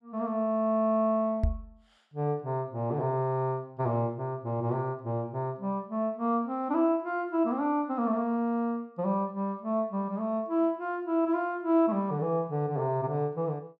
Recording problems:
microphone thump; at 1.5 s; peak +6 dB vs average level

